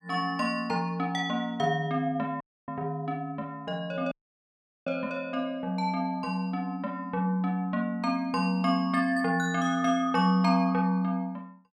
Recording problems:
dropout; at 2.5 s and at 4 s for 0.5 s

